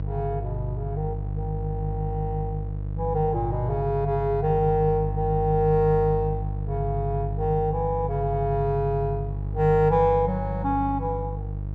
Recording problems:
mains hum; 50 Hz, harmonics up to 500 Hz, SNR 5 dB

